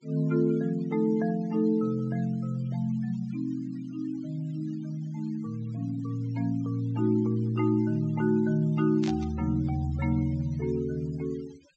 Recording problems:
treble missing; nothing above 8 kHz
denoising artefacts; signal-to-artefact ratio 25 dB
burst of static; at 9 s; peak -9 dB vs average level

